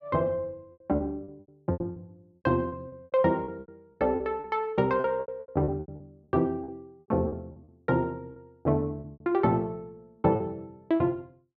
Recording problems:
packet loss; 15% of the sound replaced, filled with repeated pitch periods

